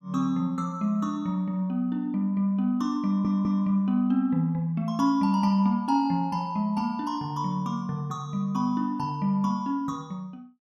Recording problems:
stutter; at 3 s

